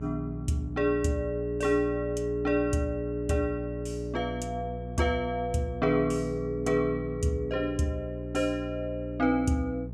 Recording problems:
mains hum; 60 Hz, harmonics up to 600 Hz, SNR 9 dB

